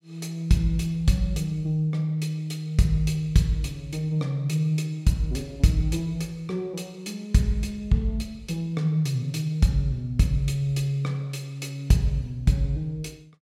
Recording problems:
none

